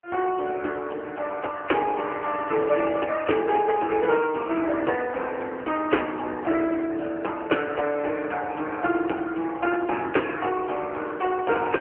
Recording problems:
phone line; 280 Hz to 3 kHz, AMR-NB

